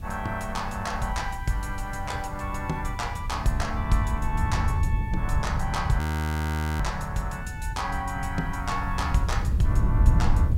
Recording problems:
background hiss; slope -4 dB per octave, SNR 27 dB
wind noise; below 110 Hz, SNR 0 dB
audio freezing; at 6 s for 1 s

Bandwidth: 16 kHz